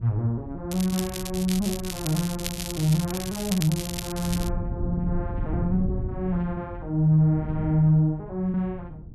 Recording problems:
wind on the microphone; below 140 Hz, SNR 9 dB
crackling; from 0.5 to 4.5 s; loose cable, SNR 9 dB

